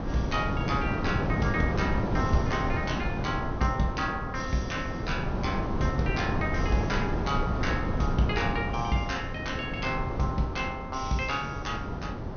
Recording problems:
treble missing; nothing above 6.3 kHz
wind noise; below 400 Hz, SNR 1 dB

